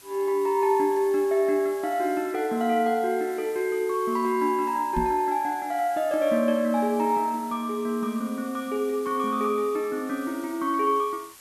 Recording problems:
hiss; slope +1 dB per octave, SNR 21 dB
microphone thump; at 5 s; peak 0 dB vs average level

